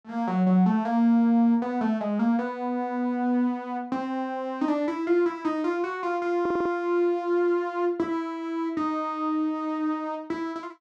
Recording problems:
audio stuttering; at 6.5 s

